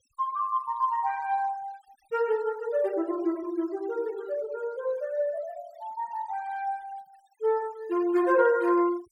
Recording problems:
denoising artefacts; signal-to-artefact ratio 24 dB

